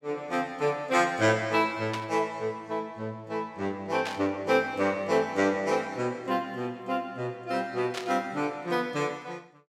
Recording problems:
burst of static; at 2 s, at 4 s and at 8 s; peak -2 dB vs average level

